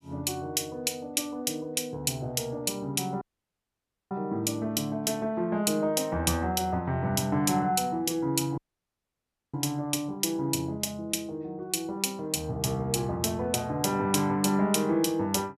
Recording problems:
dropout; at 3 s for 1 s and at 8.5 s for 1 s

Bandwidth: 14.5 kHz